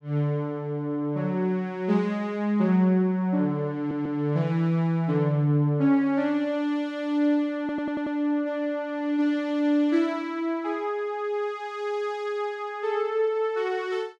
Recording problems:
stutter; at 4 s and at 7.5 s

